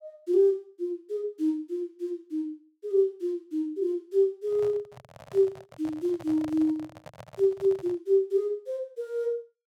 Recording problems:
microphone handling noise; from 4.5 to 8 s; peak -9 dB vs average level

